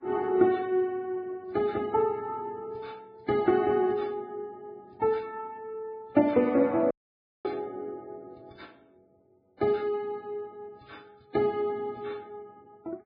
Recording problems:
lossy compression; MP3, then Vorbis, log-spectral distance 2 dB
dropout; at 7 s for 0.5 s

